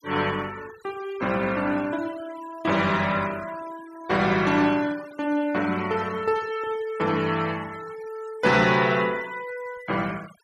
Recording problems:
noise reduction artefacts; signal-to-artefact ratio 19 dB

